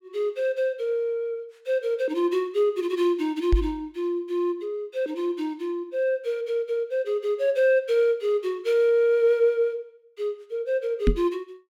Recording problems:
microphone thump; at 3.5 s and at 11 s; peak +6 dB vs average level

